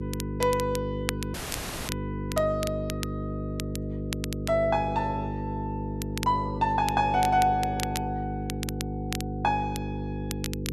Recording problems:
hum; 50 Hz, harmonics up to 500 Hz, SNR 5 dB
crackle; vinyl, SNR 11 dB
audio cutting out; at 1.5 s for 0.5 s

